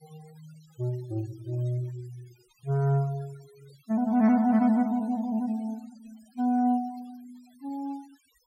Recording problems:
denoising artefacts; signal-to-artefact ratio 26 dB

